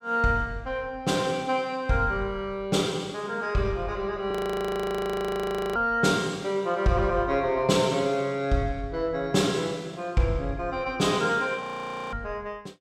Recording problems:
frozen audio; at 4.5 s for 1.5 s and at 12 s for 0.5 s

